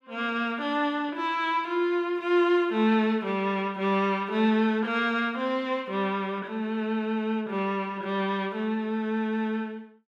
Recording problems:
none

